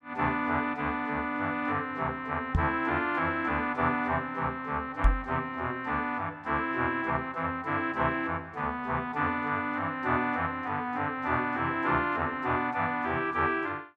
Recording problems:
microphone thump; at 2.5 s and at 5 s; peak +8 dB vs average level

